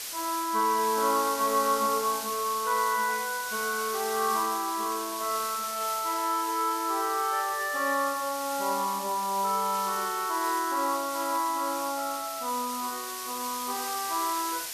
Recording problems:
background hiss; slope +2 dB per octave, SNR 7 dB

